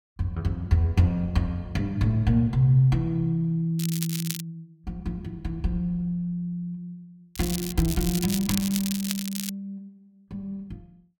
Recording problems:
crackle; at 4 s and from 7.5 to 9.5 s; loose cable, SNR 7 dB

